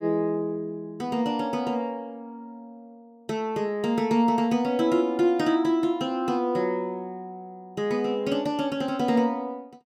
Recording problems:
none

